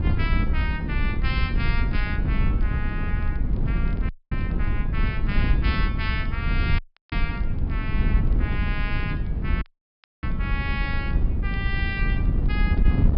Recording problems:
low-pass filter; nothing above 5.3 kHz
wind on the microphone; below 100 Hz, SNR -7 dB
crackling; vinyl, SNR 27 dB
audio cutting out; at 4 s, at 7 s and at 9.5 s for 0.5 s

